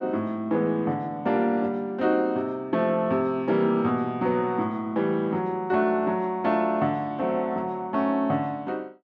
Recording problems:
none

